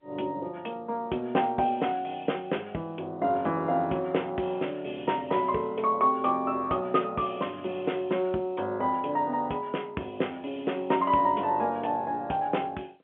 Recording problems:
phone line; 240 Hz to 3.3 kHz, G.711

